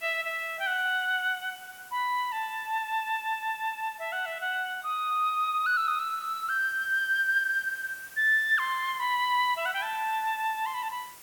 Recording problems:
hiss; slope -1 dB per octave, SNR 20 dB

